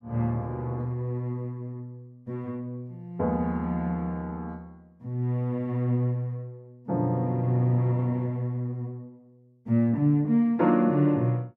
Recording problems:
none

